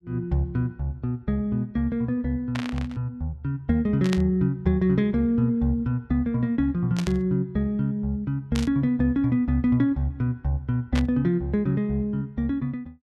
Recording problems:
burst of static; 5 times, first at 2.5 s; peak -3 dB vs average level

